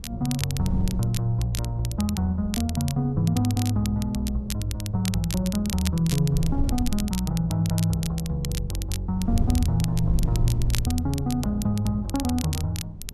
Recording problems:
wind noise; below 100 Hz, SNR 9 dB
crackle; vinyl, SNR 11 dB

